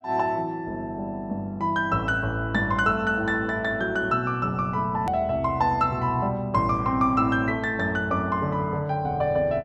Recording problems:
hard cut with a click; at 5 s

